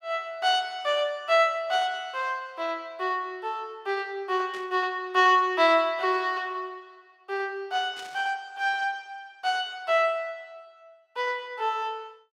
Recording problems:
burst of static; at 4.5 s and at 8 s; peak -12 dB vs average level

